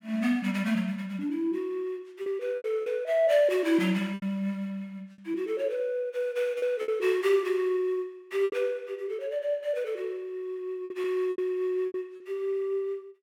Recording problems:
packet loss; 6% of the sound replaced, filled with repeated pitch periods

